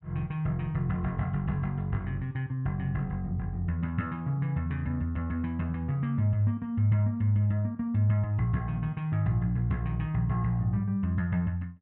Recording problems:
none

